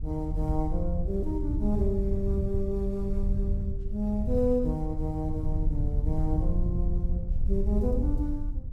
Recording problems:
wind noise; below 76 Hz, SNR -1 dB

